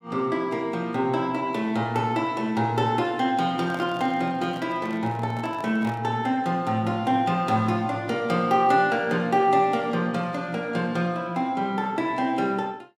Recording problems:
handling noise; from 3.5 to 6 s; peak -9 dB vs average level

